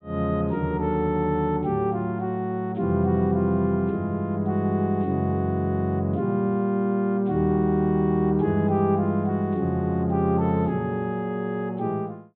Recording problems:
treble missing; nothing above 4 kHz

